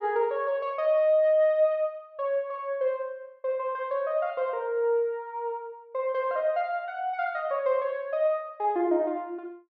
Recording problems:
none

